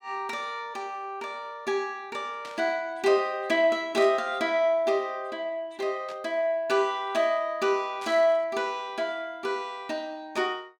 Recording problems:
static burst; 4 times, first at 2.5 s; peak -12 dB vs average level

